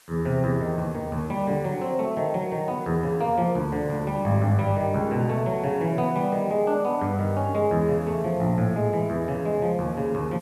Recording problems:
background hiss; SNR 28 dB

